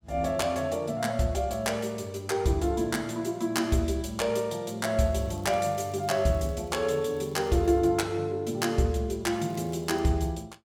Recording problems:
crackling; from 5 to 8 s and at 9.5 s; loose cable, SNR 30 dB

